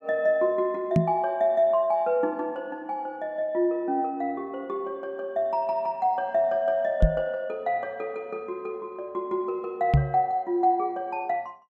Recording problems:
knock on the microphone; at 1 s, at 7 s and at 10 s; peak +10 dB vs average level

